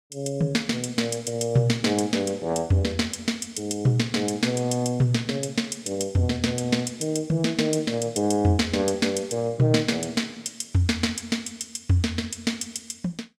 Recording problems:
none

